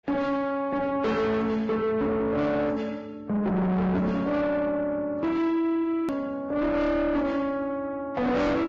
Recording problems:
codec artefacts; Vorbis, log-spectral distance 2 dB, nothing above 13.7 kHz
distorted audio; soft clipping, signal-to-distortion ratio 7 dB
edit click; at 6 s

